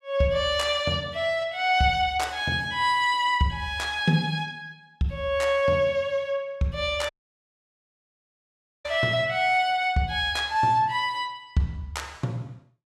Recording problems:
audio cutting out; at 7 s for 2 s

